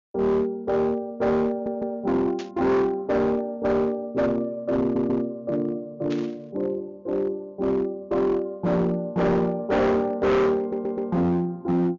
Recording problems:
treble missing; nothing above 7.1 kHz
distortion; hard clipping, uneven, signal-to-distortion ratio 8 dB
stutter; at 1.5 s, at 5 s and at 11 s
burst of static; at 2.5 s and at 6 s; peak -10 dB vs average level

